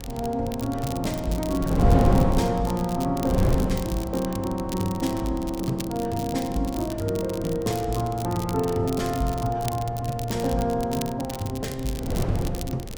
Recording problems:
wind on the microphone; below 280 Hz, SNR 5 dB
crackle; vinyl, SNR 13 dB

